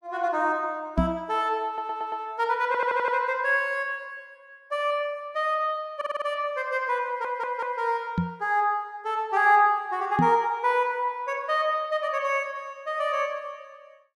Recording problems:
microphone thump; at 1 s, at 8 s and at 10 s; peak +6 dB vs average level
stutter; 4 times, first at 1.5 s

